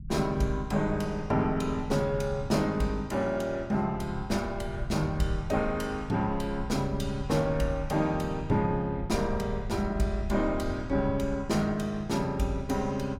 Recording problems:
rumble; below 110 Hz, SNR 11 dB

